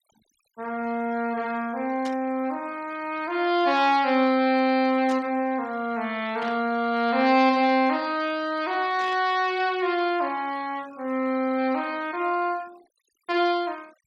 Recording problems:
denoising artefacts; signal-to-artefact ratio 24 dB
static burst; 4 times, first at 2 s; peak -10 dB vs average level

